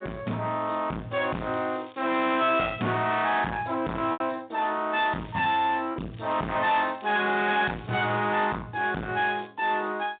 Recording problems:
telephone audio; 130 Hz to 3.9 kHz, G.726
distortion; soft clipping, signal-to-distortion ratio 8 dB
packet loss; 1.2% of the sound replaced, filled with repeated pitch periods
crackle; 4 times, first at 1.5 s; loose cable, SNR 27 dB

